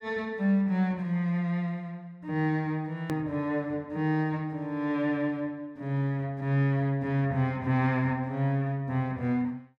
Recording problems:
click at an edit; at 3 s

